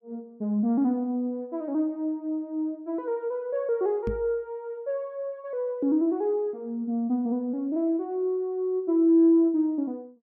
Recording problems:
microphone thump; at 4 s; peak -2 dB vs average level

